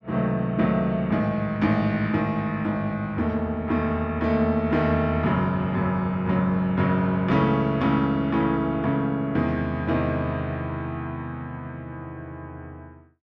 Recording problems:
none

